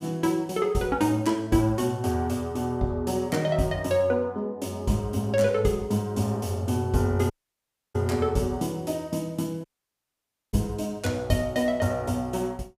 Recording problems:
dropout; at 7.5 s for 0.5 s and at 9.5 s for 1 s

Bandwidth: 15.5 kHz